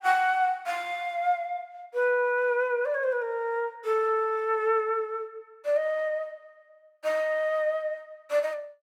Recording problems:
none

